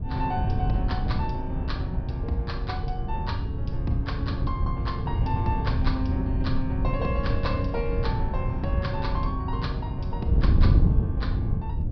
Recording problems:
treble cut off; nothing above 5.5 kHz
wind on the microphone; below 120 Hz, SNR -5 dB

